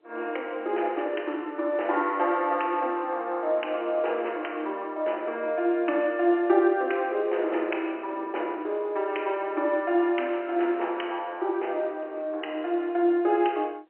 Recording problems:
phone line; 280 Hz to 3.1 kHz, G.711
wind on the microphone; below 530 Hz, SNR 23 dB

